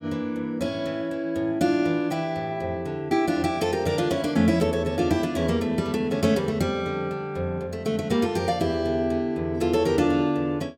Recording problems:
none

